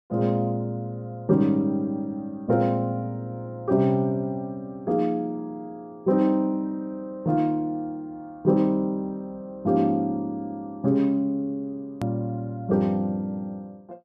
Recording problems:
click at an edit; at 12 s

